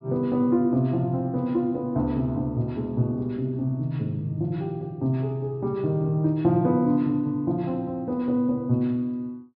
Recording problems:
treble missing; nothing above 5.5 kHz

